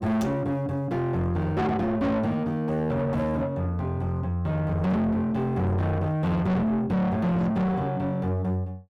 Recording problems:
distorted audio; soft clipping, signal-to-distortion ratio 6 dB

